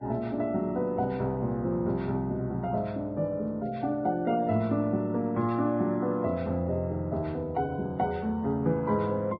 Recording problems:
lossy compression; Vorbis, log-spectral distance 2 dB

